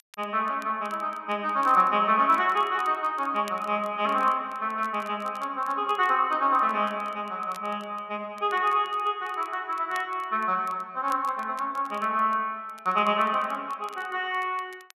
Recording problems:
crackling; vinyl, SNR 27 dB

